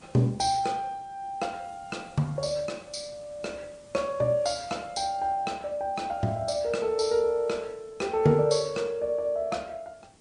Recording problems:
codec artefacts; MP3, log-spectral distance 3 dB
hiss; SNR 27 dB

